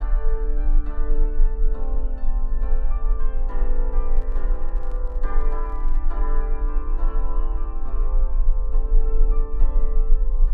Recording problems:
rumble; below 32 Hz, strongest tone 20 Hz, SNR -12 dB
microphone handling noise; from 4 to 6 s; peak -9 dB vs average level

